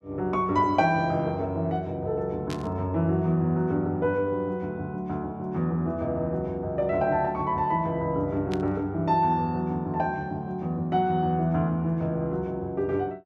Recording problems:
static burst; at 2.5 s and at 8.5 s; peak -7 dB vs average level

